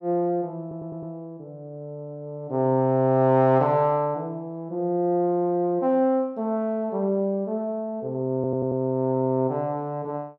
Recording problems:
stutter; at 0.5 s and at 8.5 s

